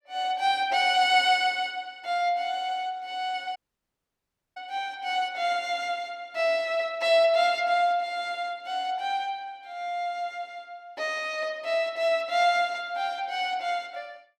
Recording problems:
audio cutting out; at 3.5 s for 1 s

